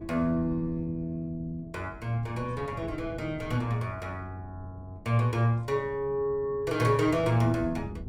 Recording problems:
wind noise; below 190 Hz, SNR 16 dB

